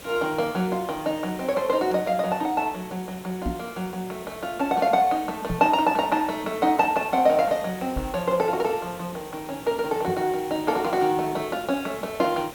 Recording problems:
background hiss; slope -4 dB per octave, SNR 17 dB
knock on the microphone; 4 times, first at 3.5 s; peak 0 dB vs average level

